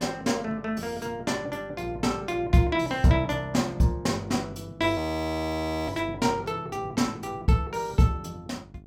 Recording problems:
mains hum; 50 Hz, harmonics up to 950 Hz, SNR 23 dB
frozen audio; at 5 s for 1 s

